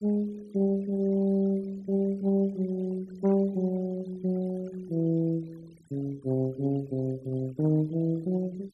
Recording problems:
noise reduction artefacts; signal-to-artefact ratio 25 dB

